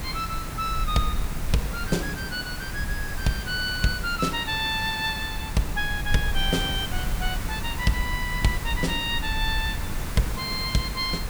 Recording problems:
background hiss; slope -3 dB per octave, SNR 7 dB
low-frequency rumble; below 62 Hz, SNR 8 dB

